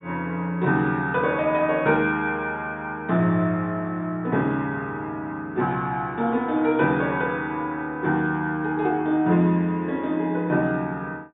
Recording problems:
low-pass filter; nothing above 4 kHz

